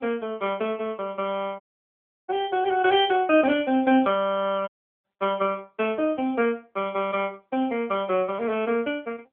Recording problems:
telephone audio; 220 Hz to 3.3 kHz, AMR-NB
audio cutting out; at 1.5 s for 0.5 s and at 4.5 s

